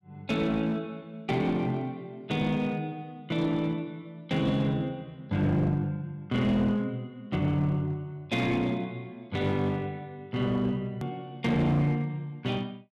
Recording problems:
distortion; hard clipping, uneven, signal-to-distortion ratio 10 dB
click at an edit; at 11 s

